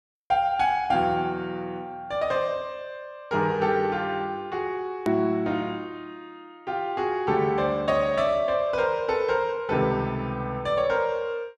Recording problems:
hard cut with a click; at 5 s

